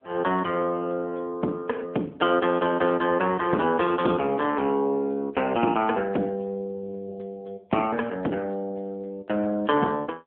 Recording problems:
phone line; 190 Hz to 3.5 kHz, AMR-NB

